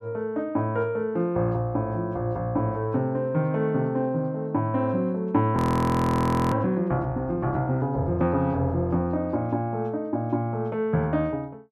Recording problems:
audio freezing; at 5.5 s for 1 s

